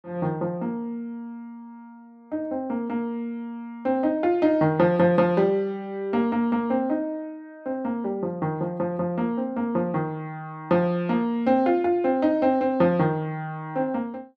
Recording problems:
none

